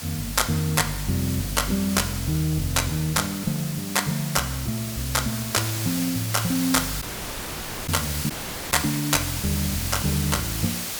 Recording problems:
background hiss; slope 0 dB per octave, SNR 6 dB
dropout; at 7 s for 1 s and at 8.5 s

